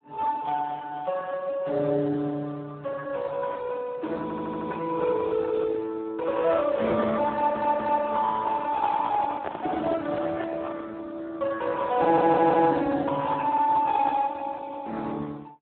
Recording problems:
telephone audio; 240 Hz to 2.5 kHz, Speex
stutter; at 4 s, at 7.5 s and at 12 s
microphone handling noise; from 8.5 to 11 s; peak -3 dB vs average level

